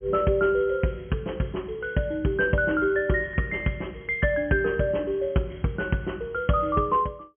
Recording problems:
treble missing; nothing above 3.3 kHz

